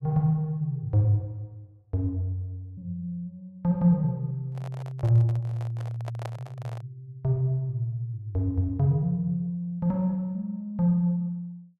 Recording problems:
microphone handling noise; from 4.5 to 7 s; peak -6 dB vs average level

